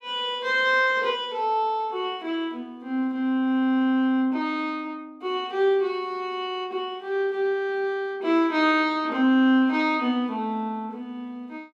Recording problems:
none

